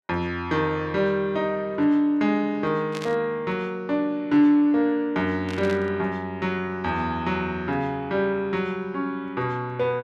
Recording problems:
burst of static; at 3 s and at 5.5 s; peak -7 dB vs average level

